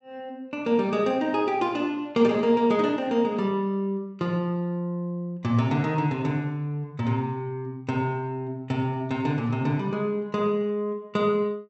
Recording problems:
treble missing; nothing above 7.8 kHz

